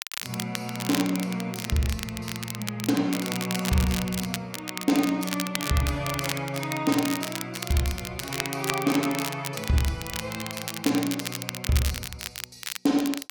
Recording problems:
crackle; vinyl, SNR 6 dB

